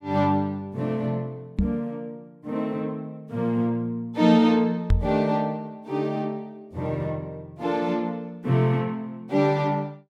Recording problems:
microphone thump; at 1.5 s and at 5 s; peak +7 dB vs average level

